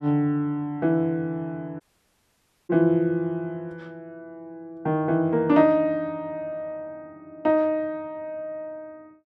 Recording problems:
audio cutting out; at 2 s for 1 s

